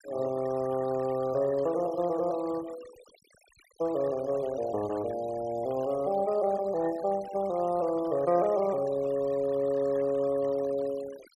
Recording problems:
denoising artefacts; signal-to-artefact ratio 20 dB

